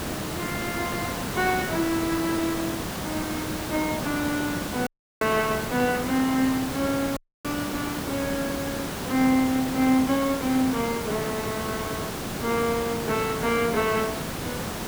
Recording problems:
hiss; slope -5 dB per octave, SNR 4 dB
dropout; at 5 s and at 7 s

